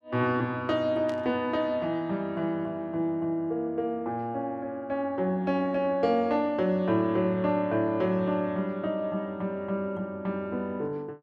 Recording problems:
burst of static; at 1 s; peak -12 dB vs average level

